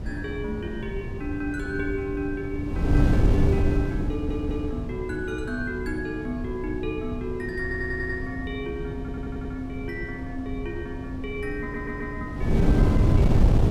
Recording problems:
wind on the microphone; below 170 Hz, SNR -3 dB
audio stuttering; 4 times, first at 4 s

